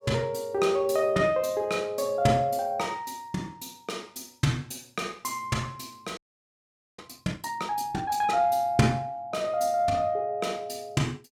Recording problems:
audio freezing; at 6 s for 1 s

